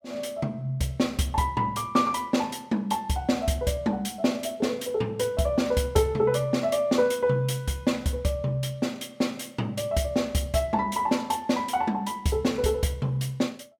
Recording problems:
none

